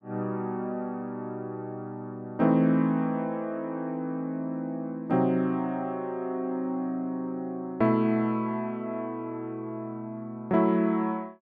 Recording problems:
none

